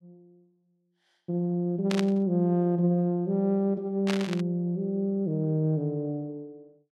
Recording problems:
burst of static; at 2 s and at 4 s; peak -2 dB vs average level

